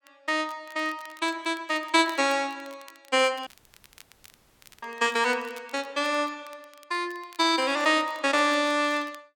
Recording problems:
crackling; vinyl, SNR 27 dB
dropout; at 3.5 s for 1.5 s

